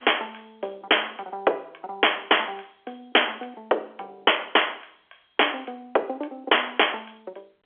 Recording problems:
phone line; 340 Hz to 3.4 kHz, G.711

